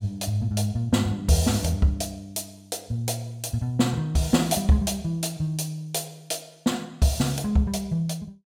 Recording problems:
none

